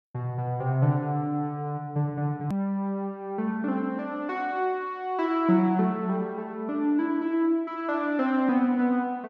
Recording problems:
hard cut with a click; at 2.5 s

